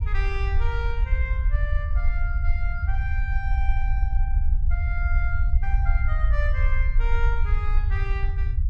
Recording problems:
rumble; below 60 Hz, SNR -9 dB

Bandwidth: 12.5 kHz